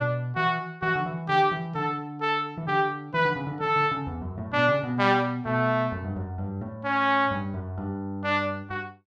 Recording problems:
none

